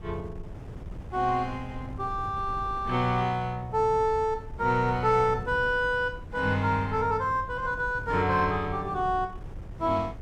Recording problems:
wind on the microphone; below 140 Hz, SNR 15 dB

